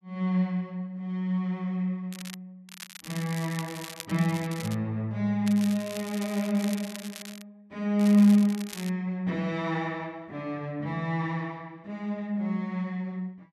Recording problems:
crackling; 4 times, first at 2 s; loose cable, SNR 14 dB

